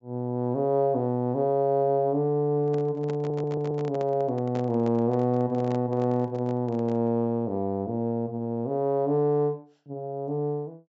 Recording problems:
treble cut off; nothing above 8 kHz
microphone handling noise; from 2.5 to 7 s; peak -8 dB vs average level
stutter; at 3 s

